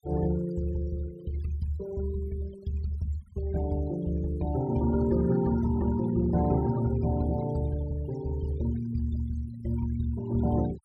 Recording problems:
denoising artefacts; signal-to-artefact ratio 18 dB

